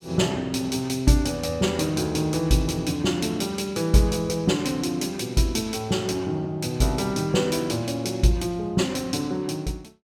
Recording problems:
none

